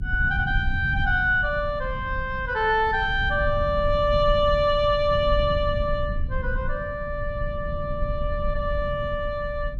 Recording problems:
rumble; below 94 Hz, SNR 7 dB

